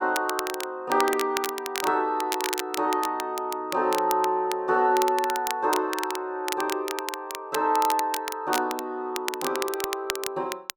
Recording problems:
crackling; vinyl, SNR 8 dB

